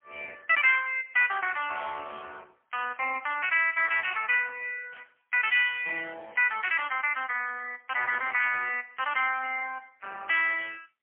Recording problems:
phone line; 410 Hz to 3.1 kHz, AMR-NB, then MP3
burst of static; 4 times, first at 3 s; peak -20 dB vs average level

